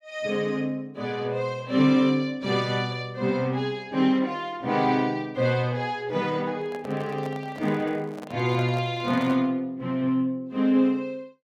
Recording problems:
handling noise; from 6.5 to 9.5 s; peak -8 dB vs average level

